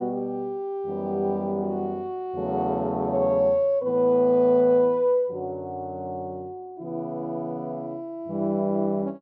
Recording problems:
none

